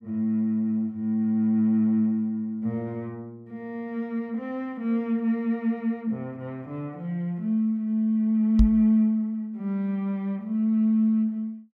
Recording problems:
microphone bump; at 8.5 s; peak +7 dB vs average level

